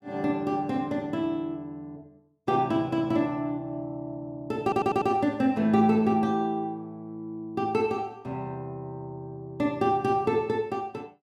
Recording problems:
stutter; at 4.5 s

